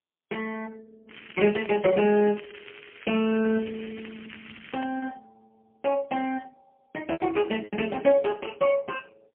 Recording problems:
phone line; 190 Hz to 3.1 kHz, AMR-NB, then MP3
packet loss; 4% of the sound replaced, filled with repeated pitch periods
crackling; from 1 to 5 s; loose cable, SNR 18 dB

